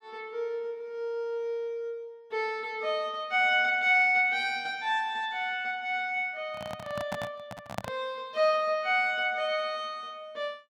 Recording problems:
microphone handling noise; from 6.5 to 8 s; peak -1 dB vs average level

